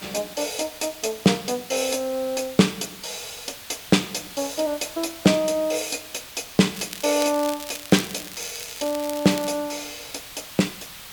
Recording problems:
background hiss; SNR 14 dB
crackle; from 7 to 9.5 s; loose cable, SNR 12 dB

